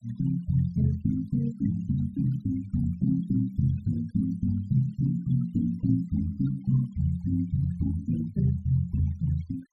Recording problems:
noise reduction artefacts; signal-to-artefact ratio 23 dB

